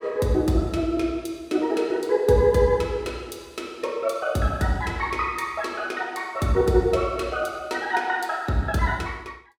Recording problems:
none

